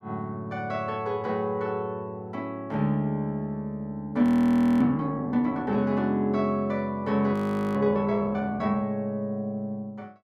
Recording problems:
audio freezing; at 4 s for 0.5 s and at 7.5 s

